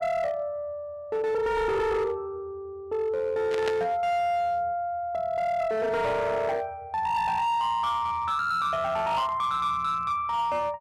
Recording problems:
distortion; hard clipping, signal-to-distortion ratio 11 dB
burst of static; at 3.5 s; peak -2 dB vs average level

